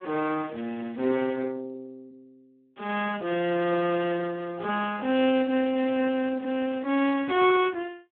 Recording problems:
phone line; 280 Hz to 3.7 kHz, Speex

